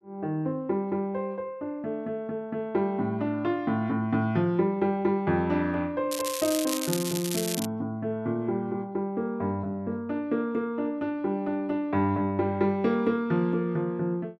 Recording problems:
crackling; from 6 to 7.5 s; loose cable, SNR 5 dB

